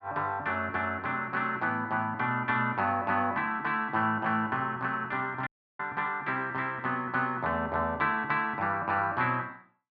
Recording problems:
dropout; at 5.5 s

